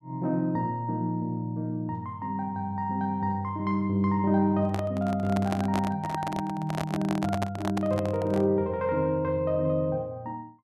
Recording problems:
handling noise; from 4.5 to 8.5 s; peak 0 dB vs average level

